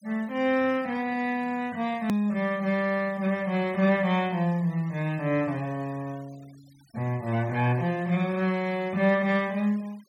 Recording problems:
denoising artefacts; signal-to-artefact ratio 25 dB
edit click; at 2 s

